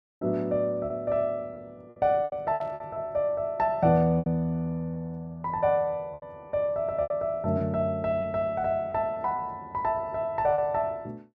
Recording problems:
lost packets; 7% of the sound replaced, filled with repeated pitch periods
burst of static; at 2.5 s; peak -22 dB vs average level

